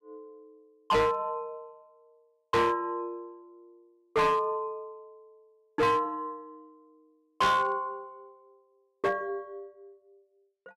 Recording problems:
distortion; hard clipping, signal-to-distortion ratio 7 dB

